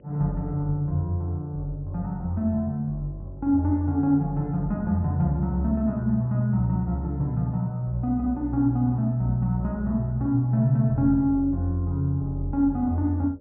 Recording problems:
treble cut off; nothing above 3 kHz
hum; 50 Hz, harmonics up to 600 Hz, SNR 31 dB

